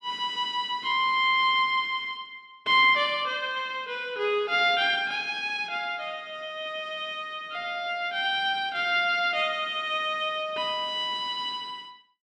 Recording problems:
none

